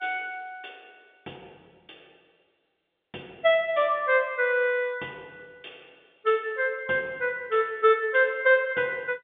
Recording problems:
phone line; 240 Hz to 3.6 kHz, G.711

